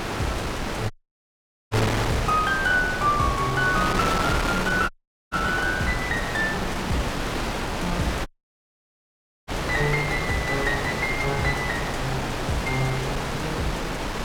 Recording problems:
wind noise; below 2.1 kHz, SNR 2 dB
audio cutting out; at 1 s for 1 s, at 5 s and at 8.5 s for 1 s

